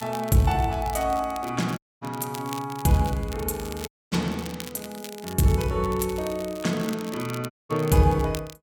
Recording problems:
crackling; vinyl, SNR 16 dB
dropout; at 2 s, at 4 s and at 7.5 s

